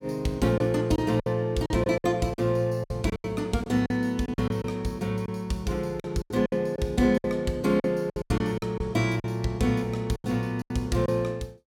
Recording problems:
packet loss; 12% of the sound replaced, filled with silence

